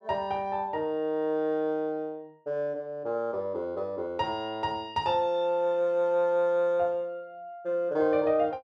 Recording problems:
none

